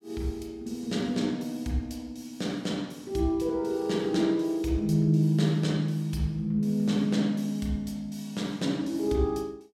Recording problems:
none

